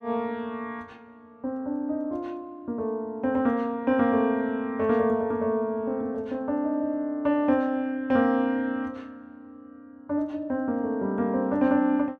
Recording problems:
none

